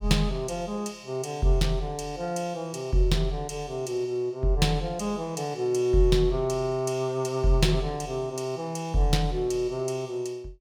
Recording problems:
none

